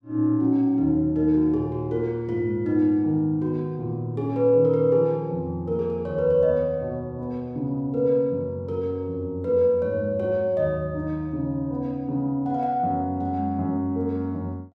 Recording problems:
none

